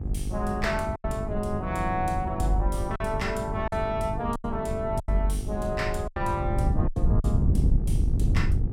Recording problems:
electrical hum; 50 Hz, harmonics up to 900 Hz, SNR 9 dB
wind noise; below 120 Hz, SNR 0 dB
packet loss; 6% of the sound replaced, filled with silence

